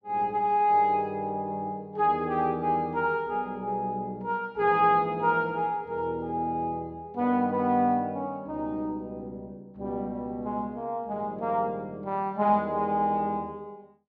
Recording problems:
none

